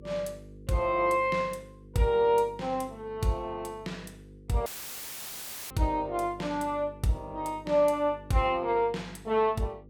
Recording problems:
electrical hum; 50 Hz, harmonics up to 500 Hz, SNR 20 dB
audio cutting out; at 4.5 s for 1 s; filled with static

